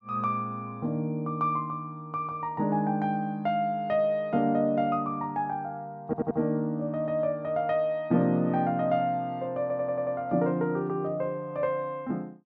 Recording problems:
audio stuttering; at 6 s and at 9.5 s

